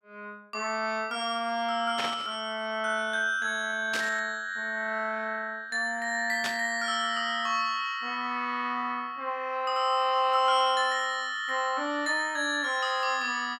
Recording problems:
static burst; at 2 s, at 4 s and at 6.5 s; peak 0 dB vs average level

